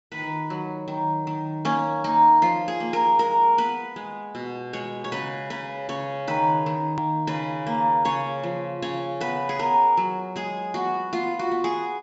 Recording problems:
treble cut off; nothing above 8 kHz
click at an edit; at 7 s

